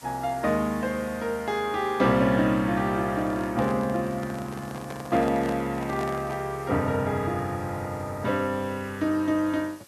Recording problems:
background hiss; slope 0 dB per octave, SNR 23 dB
microphone handling noise; from 3 to 6.5 s; peak -6 dB vs average level

